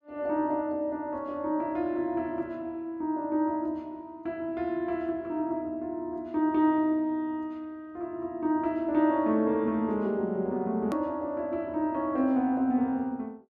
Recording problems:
click at an edit; at 11 s

